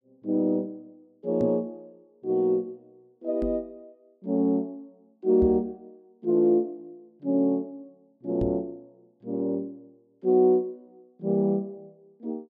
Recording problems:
microphone bump; 4 times, first at 1.5 s; peak -1 dB vs average level

